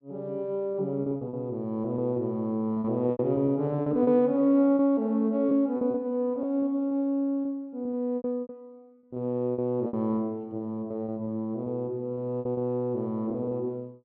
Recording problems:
packet loss; 11% of the sound replaced, filled with repeated pitch periods

